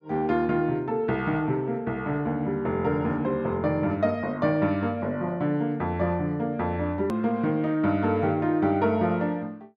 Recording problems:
click at an edit; at 7 s

